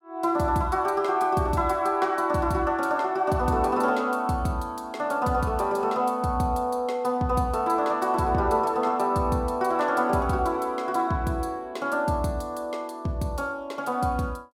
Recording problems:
none

